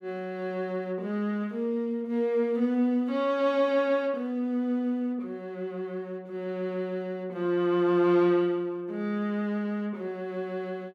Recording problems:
none

